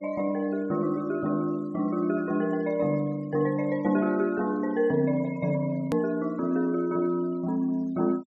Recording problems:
low-pass filter; nothing above 8 kHz
denoising artefacts; signal-to-artefact ratio 28 dB
edit click; at 6 s

